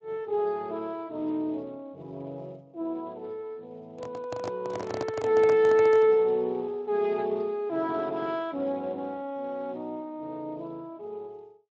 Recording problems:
codec artefacts; Speex, log-spectral distance 2 dB
handling noise; from 4 to 6 s; peak -2 dB vs average level

